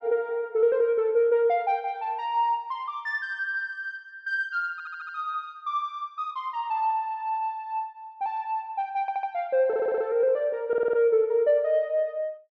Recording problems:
stutter; 4 times, first at 4.5 s

